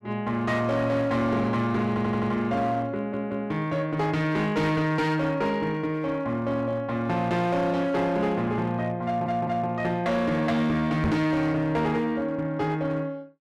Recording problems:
distortion; hard clipping, uneven, signal-to-distortion ratio 10 dB
audio stuttering; at 2 s, at 3 s and at 9 s
knock on the microphone; at 11 s; peak +4 dB vs average level

